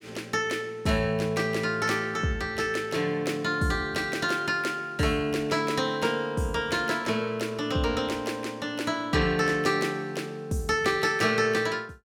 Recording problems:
none

